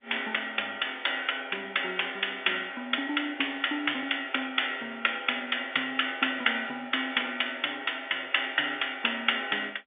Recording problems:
phone line; 260 Hz to 3.6 kHz, G.711

